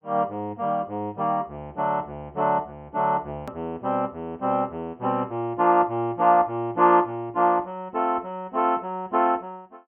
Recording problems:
low-pass filter; nothing above 3.1 kHz
edit click; at 3.5 s

